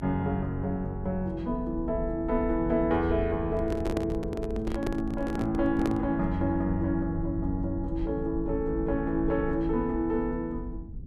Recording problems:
low-frequency rumble; below 92 Hz, SNR 9 dB
microphone handling noise; from 3.5 to 6 s; peak +1 dB vs average level

